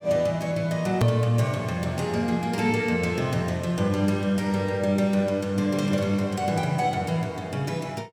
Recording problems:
hard cut with a click; at 1 s

